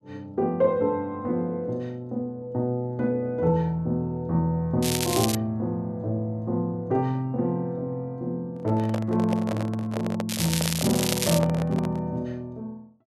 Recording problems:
crackling; at 5 s and from 10 to 11 s; loose cable, SNR 2 dB
handling noise; from 8.5 to 12 s; peak -1 dB vs average level

